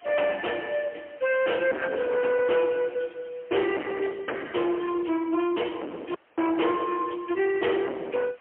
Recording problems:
telephone audio; 260 Hz to 3.2 kHz, AMR-NB, then MP3
distortion; hard clipping, uneven, signal-to-distortion ratio 5 dB
background hiss; SNR 30 dB
dropout; at 6 s

